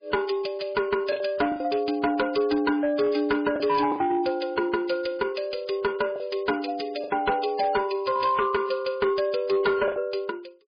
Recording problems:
lossy codec; MP3, log-spectral distance 5 dB, nothing above 4.8 kHz
distorted audio; hard clipping, signal-to-distortion ratio 12 dB
packet loss; 5% of the sound replaced, filled with the last packet

